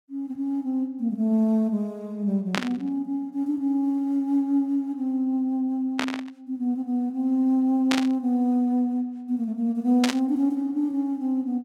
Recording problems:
burst of static; 4 times, first at 2.5 s; peak +3 dB vs average level

